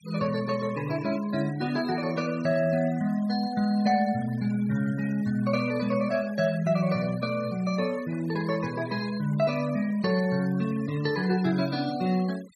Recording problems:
noise reduction artefacts; signal-to-artefact ratio 20 dB

